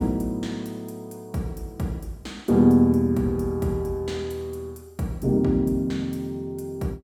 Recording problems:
none

